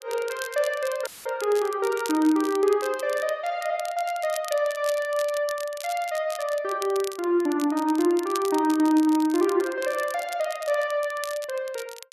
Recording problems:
crackling; vinyl, SNR 15 dB
dropout; at 1 s; filled with static

